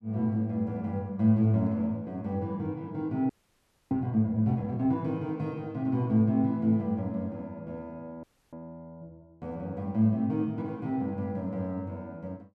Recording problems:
audio freezing; at 3.5 s for 0.5 s and at 8 s

